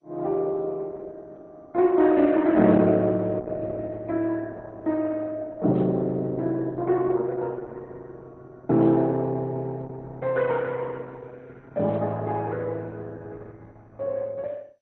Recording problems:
lossy compression; Opus, then MP2, log-spectral distance 3 dB

